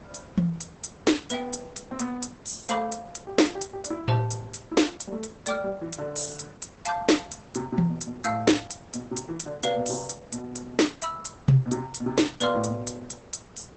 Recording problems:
lossy codec; Opus, log-spectral distance 7 dB, nothing above 8.2 kHz
hiss; slope -7 dB per octave, SNR 22 dB

